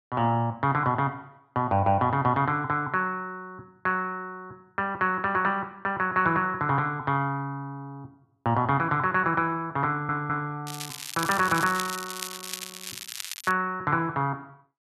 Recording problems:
stutter; at 10 s
crackle; from 11 to 14 s; loose cable, SNR 9 dB

